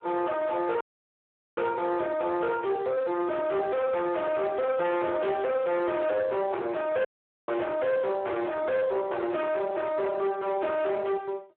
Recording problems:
phone line; 320 Hz to 3.7 kHz, Speex
distorted audio; hard clipping, uneven, signal-to-distortion ratio 8 dB
dropout; at 1 s for 1 s and at 7 s

